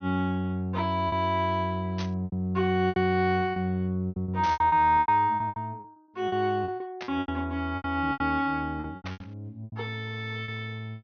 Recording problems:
low-pass filter; nothing above 6.3 kHz
lost packets; 13% of the sound replaced, filled with repeated pitch periods
burst of static; 4 times, first at 2 s; peak -7 dB vs average level

